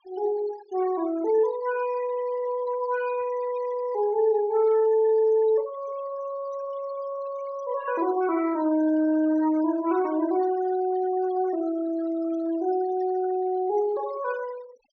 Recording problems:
treble missing; nothing above 6.5 kHz
denoising artefacts; signal-to-artefact ratio 20 dB

